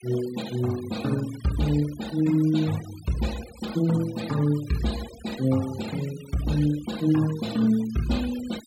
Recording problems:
noise reduction artefacts; signal-to-artefact ratio 16 dB

